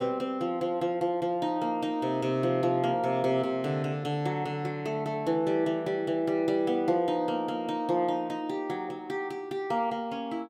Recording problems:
none

